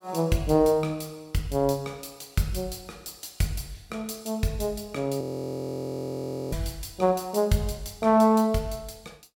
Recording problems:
frozen audio; at 5 s for 1.5 s

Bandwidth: 17 kHz